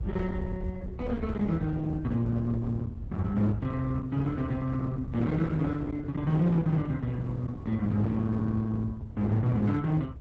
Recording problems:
lossy compression; Opus, log-spectral distance 2 dB
distortion; hard clipping, signal-to-distortion ratio 11 dB
rumble; below 170 Hz, SNR 8 dB
wind on the microphone; below 430 Hz, SNR 22 dB

